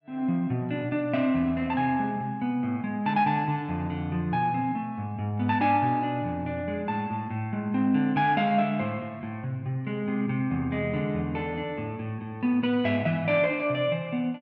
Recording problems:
none

